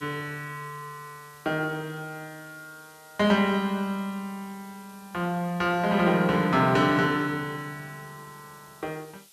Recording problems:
background hiss; SNR 26 dB

